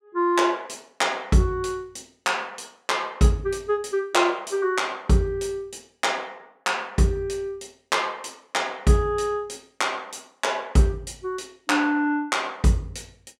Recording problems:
none

